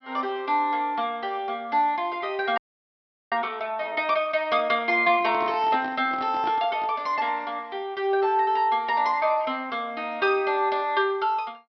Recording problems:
treble cut off; nothing above 5.5 kHz
audio freezing; at 2.5 s for 0.5 s
microphone handling noise; from 5 to 7 s; peak -6 dB vs average level

